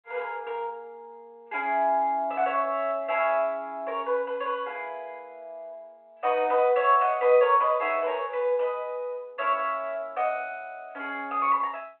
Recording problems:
phone line; 320 Hz to 3.3 kHz, G.726

